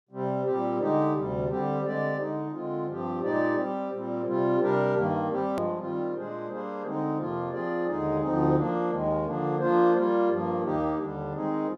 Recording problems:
edit click; at 5.5 s

